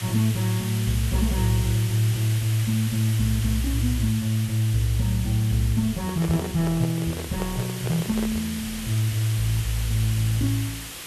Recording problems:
background hiss; slope 0 dB per octave, SNR 10 dB
microphone handling noise; from 6 to 8.5 s; peak -5 dB vs average level

